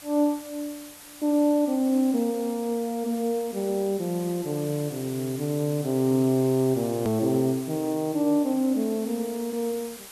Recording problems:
hiss; slope 0 dB per octave, SNR 16 dB
hard cut with a click; at 7 s

